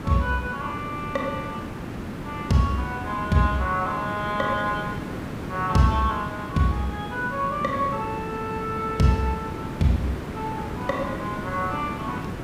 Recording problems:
background hiss; slope -7 dB per octave, SNR 7 dB

